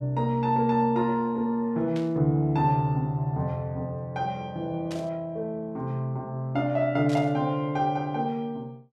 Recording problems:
static burst; at 2 s, at 5 s and at 7 s; peak -10 dB vs average level

